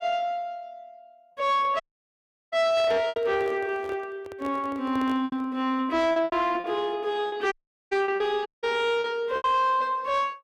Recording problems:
distorted audio; soft clipping, signal-to-distortion ratio 10 dB
lost packets; 8% of the sound replaced, filled with repeated pitch periods
audio cutting out; at 2 s for 0.5 s, at 7.5 s and at 8.5 s
handling noise; from 2.5 to 5.5 s; peak -9 dB vs average level

